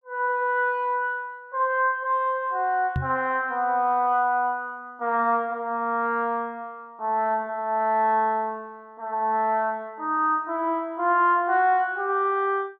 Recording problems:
knock on the microphone; at 3 s; peak 0 dB vs average level

